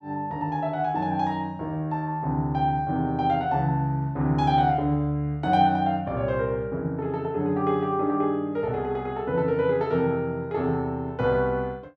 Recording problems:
none

